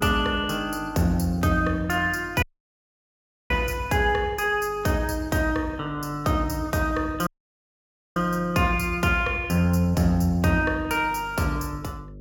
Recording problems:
electrical hum; 50 Hz, harmonics up to 600 Hz, SNR 20 dB
dropout; at 2.5 s for 1 s and at 7.5 s for 1 s

